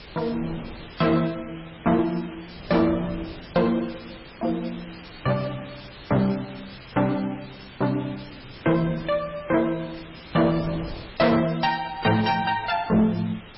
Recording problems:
lossy codec; MP3, log-spectral distance 15 dB, nothing above 5.5 kHz
distortion; hard clipping, uneven, signal-to-distortion ratio 11 dB
hiss; SNR 19 dB
wind on the microphone; below 530 Hz, SNR 19 dB

